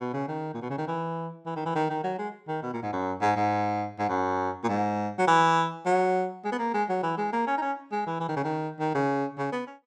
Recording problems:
none

